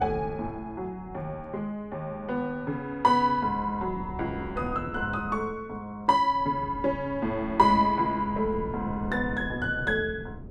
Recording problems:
wind on the microphone; below 250 Hz, SNR 13 dB

